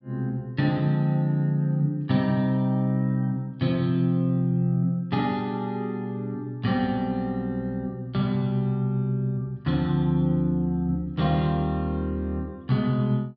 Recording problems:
treble missing; nothing above 5.5 kHz

